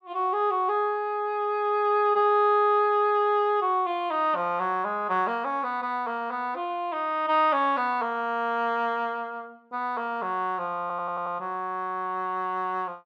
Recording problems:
audio stuttering; at 11 s

